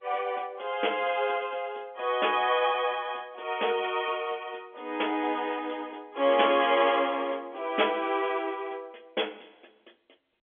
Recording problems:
phone line; 260 Hz to 3.5 kHz, G.711

